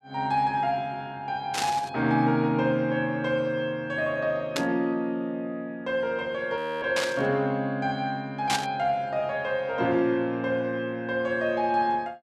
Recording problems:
static burst; 4 times, first at 1.5 s; peak +3 dB vs average level
frozen audio; at 6.5 s

